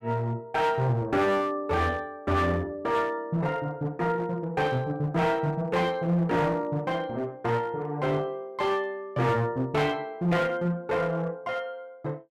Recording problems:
distortion; hard clipping, uneven, signal-to-distortion ratio 10 dB

